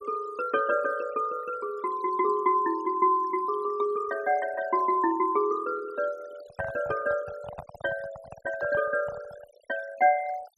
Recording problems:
noise reduction artefacts; signal-to-artefact ratio 20 dB
handling noise; from 6.5 to 9.5 s; peak -5 dB vs average level

